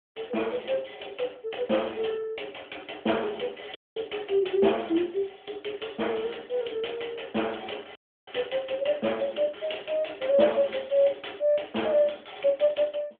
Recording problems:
phone line; 170 Hz to 3.4 kHz, AMR-NB
dropout; at 4 s and at 8 s

